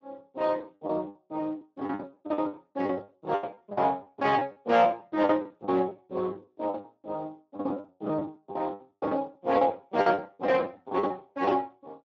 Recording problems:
lossy compression; Speex, log-spectral distance 2 dB
packet loss; 20% of the sound replaced, filled with the last packet

